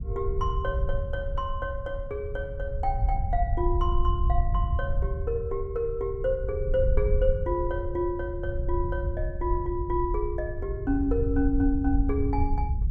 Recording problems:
rumble; below 74 Hz, SNR 1 dB

